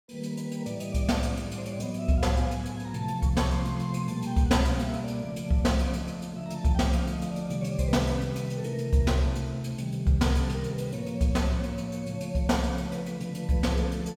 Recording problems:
none

